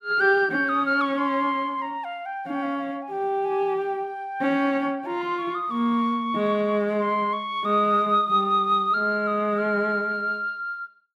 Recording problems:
none

